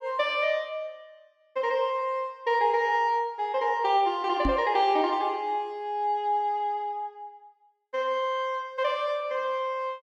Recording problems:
knock on the microphone; at 4.5 s; peak +3 dB vs average level

